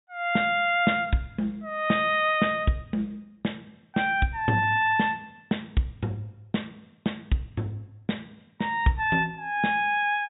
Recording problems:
treble cut off; nothing above 4 kHz

